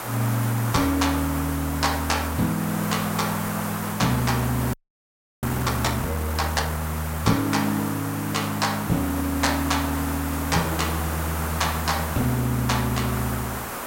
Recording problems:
hiss; SNR 6 dB
audio freezing; at 4.5 s for 0.5 s

